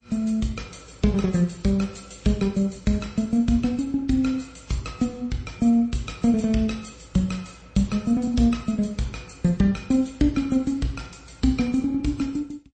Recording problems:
lossy compression; MP3, then MP3, log-spectral distance 4 dB, nothing above 8.2 kHz

